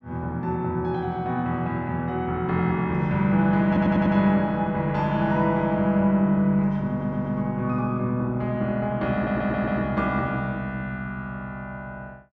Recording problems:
stutter; at 3.5 s, at 7 s and at 9 s

